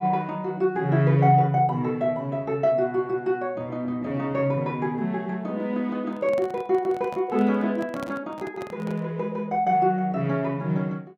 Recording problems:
microphone handling noise; from 6 to 9 s; peak -8 dB vs average level

